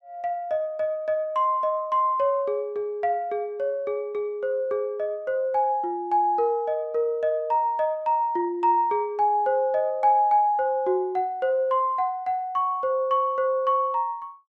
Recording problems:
none

